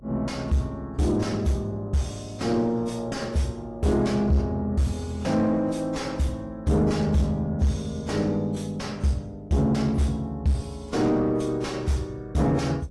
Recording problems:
lossy codec; AAC, log-spectral distance 2 dB
distorted audio; soft clipping, signal-to-distortion ratio 6 dB
hum; 50 Hz, harmonics up to 600 Hz, SNR 24 dB

